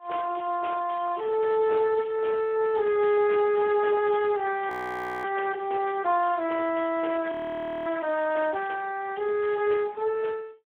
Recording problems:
phone line; 340 Hz to 2.7 kHz, Speex
crackle; at 4 s and from 7 to 8.5 s; loose cable, SNR 27 dB
frozen audio; at 4.5 s for 0.5 s and at 7.5 s for 0.5 s

